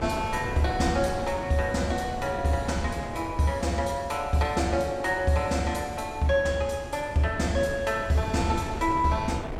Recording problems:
wind on the microphone; below 520 Hz, SNR 11 dB

